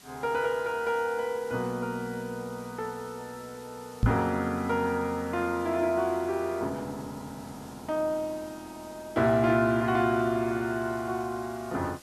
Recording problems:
hiss; slope -1 dB per octave, SNR 22 dB
microphone bump; at 4 s; peak +7 dB vs average level

